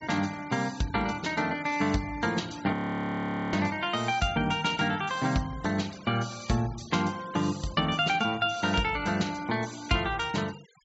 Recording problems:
treble cut off; nothing above 7.6 kHz
denoising artefacts; signal-to-artefact ratio 20 dB
audio freezing; at 2.5 s for 1 s

